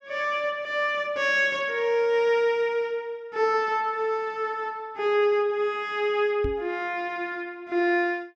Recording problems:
microphone thump; at 6.5 s; peak -3 dB vs average level

